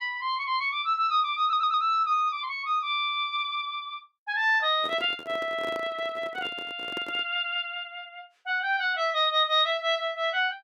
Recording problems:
audio stuttering; at 1.5 s
microphone handling noise; from 5 to 7.5 s; peak -8 dB vs average level

